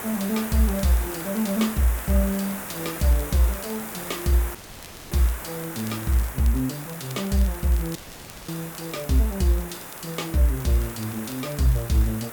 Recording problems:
background hiss; SNR 9 dB
crackle; vinyl, SNR 22 dB
audio cutting out; at 4.5 s for 0.5 s and at 8 s for 0.5 s

